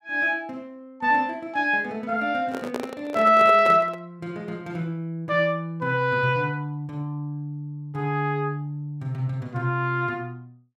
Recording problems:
handling noise; from 2.5 to 4 s; peak -1 dB vs average level

